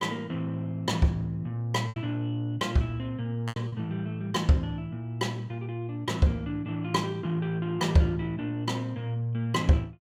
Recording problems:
lost packets; 2% of the sound replaced, filled with repeated pitch periods

